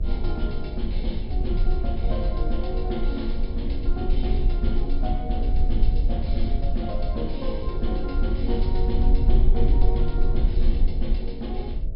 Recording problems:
treble cut off; nothing above 5.5 kHz
hum; 60 Hz, harmonics up to 660 Hz, SNR 14 dB
rumble; below 50 Hz, strongest tone 22 Hz, SNR -5 dB

